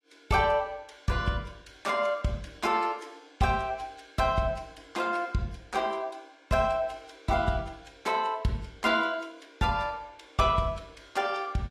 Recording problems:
codec artefacts; AAC, log-spectral distance 3 dB

